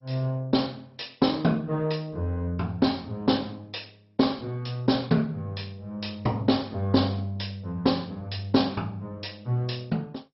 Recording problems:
lossy codec; MP2, log-spectral distance 4 dB, nothing above 5.5 kHz

